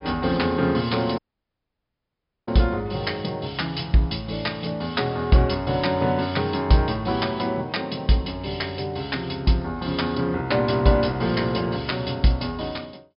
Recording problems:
low-pass filter; nothing above 5.2 kHz
dropout; at 1 s for 1.5 s

